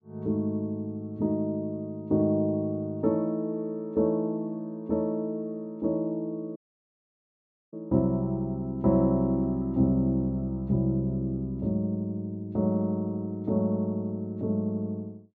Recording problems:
audio cutting out; at 6.5 s for 1 s

